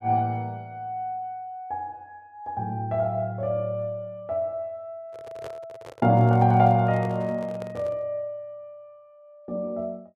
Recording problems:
handling noise; from 5 to 8 s; peak -10 dB vs average level

